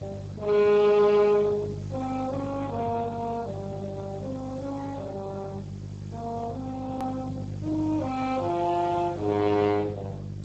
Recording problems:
lossy compression; Speex, log-spectral distance 4 dB, nothing above 13.1 kHz
mains hum; 50 Hz, harmonics up to 400 Hz, SNR 11 dB
hiss; slope -4 dB per octave, SNR 27 dB
edit click; at 7 s

